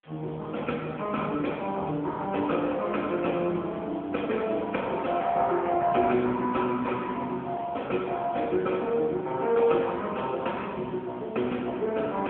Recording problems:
telephone audio; 190 Hz to 3.4 kHz, AMR-NB
hiss; SNR 27 dB

